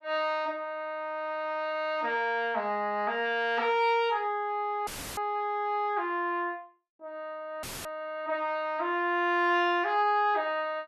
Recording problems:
dropout; at 5 s and at 7.5 s; filled with static

